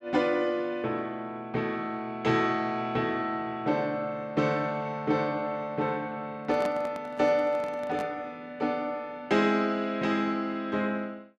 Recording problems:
microphone handling noise; from 6.5 to 8 s; peak -3 dB vs average level

